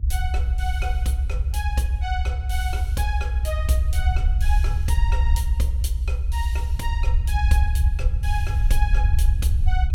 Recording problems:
rumble; below 72 Hz, SNR -8 dB

